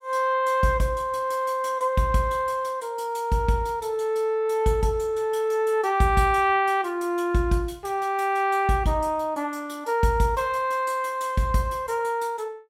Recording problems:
none

